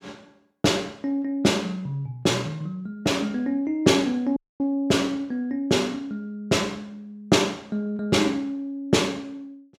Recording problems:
dropout; at 4.5 s

